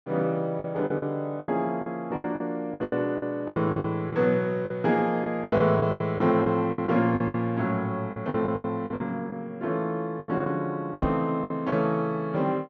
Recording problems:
treble missing; nothing above 8 kHz
lost packets; 14% of the sound replaced, filled with the last packet
microphone bump; at 11 s; peak 0 dB vs average level

